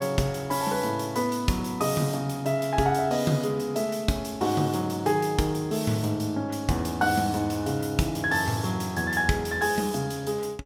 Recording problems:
none

